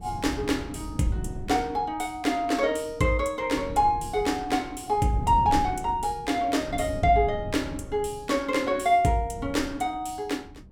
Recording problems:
wind on the microphone; below 170 Hz, SNR 12 dB

